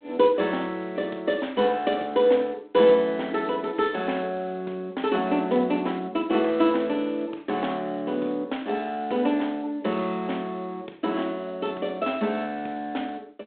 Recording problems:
phone line; 240 Hz to 3.9 kHz, G.726

